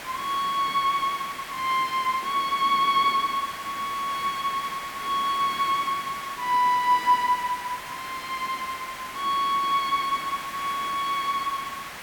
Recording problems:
background hiss; SNR 11 dB

